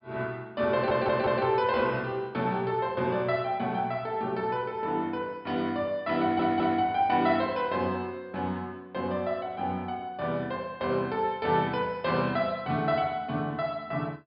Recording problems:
low-pass filter; nothing above 5.5 kHz
stutter; at 0.5 s and at 6 s

